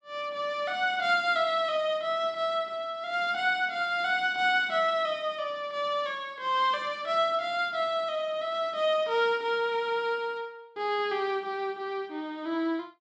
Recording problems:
none

